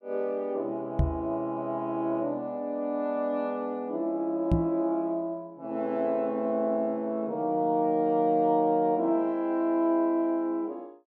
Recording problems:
microphone thump; at 1 s and at 4.5 s; peak +7 dB vs average level

